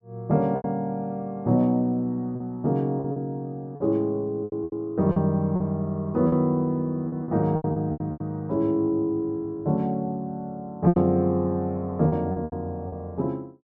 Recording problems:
lost packets; 9% of the sound replaced, filled with repeated pitch periods

